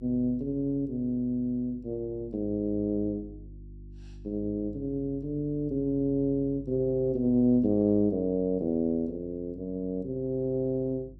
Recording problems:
hum; 50 Hz, harmonics up to 350 Hz, SNR 19 dB

